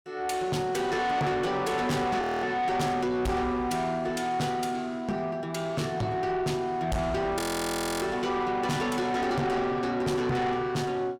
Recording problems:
distortion; soft clipping, signal-to-distortion ratio 7 dB
frozen audio; at 2 s and at 7.5 s for 0.5 s

